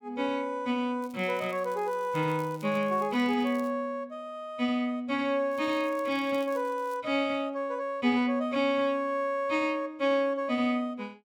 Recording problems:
crackle; from 1 to 3.5 s and from 5.5 to 7 s; loose cable, SNR 26 dB

